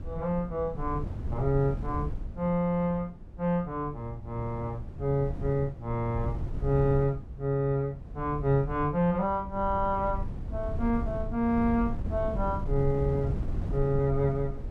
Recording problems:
wind on the microphone; below 110 Hz, SNR 7 dB

